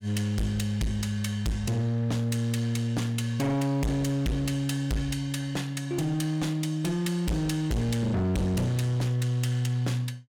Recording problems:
distortion; hard clipping, signal-to-distortion ratio 6 dB

